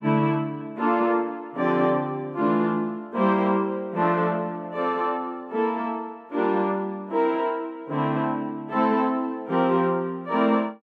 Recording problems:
none

